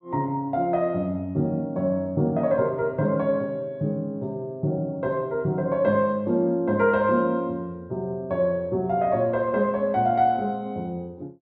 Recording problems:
none

